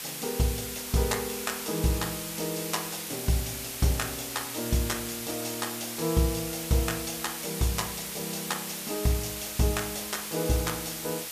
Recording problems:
hiss; slope +2 dB per octave, SNR 4 dB

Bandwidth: 14.5 kHz